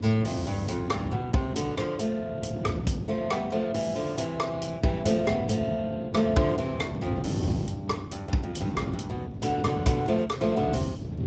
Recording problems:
lossy compression; Speex, log-spectral distance 4 dB, nothing above 7.6 kHz
wind on the microphone; below 290 Hz, SNR 6 dB

